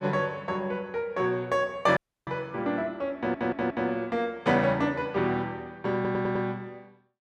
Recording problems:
audio cutting out; at 2 s
stutter; at 3 s and at 6 s

